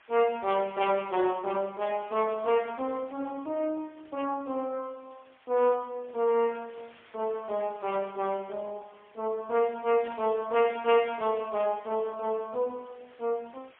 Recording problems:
phone line; 240 Hz to 3.3 kHz, AMR-NB, then MP3
background hiss; SNR 27 dB
burst of static; at 8 s and at 10 s; peak -13 dB vs average level

